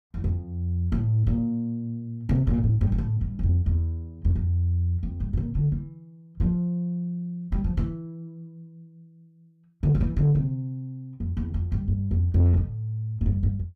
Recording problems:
distortion; soft clipping, signal-to-distortion ratio 11 dB

